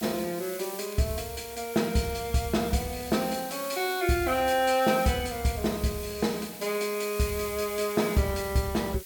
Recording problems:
hiss; SNR 12 dB
crackle; vinyl, SNR 29 dB

